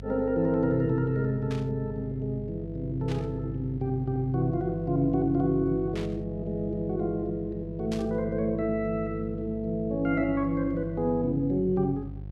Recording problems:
hum; 50 Hz, harmonics up to 550 Hz, SNR 11 dB
static burst; 4 times, first at 1.5 s; peak -8 dB vs average level

